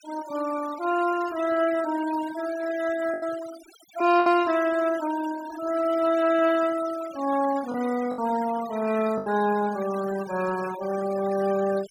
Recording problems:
noise reduction artefacts; signal-to-artefact ratio 15 dB
lost packets; 3% of the sound replaced, filled with the last packet

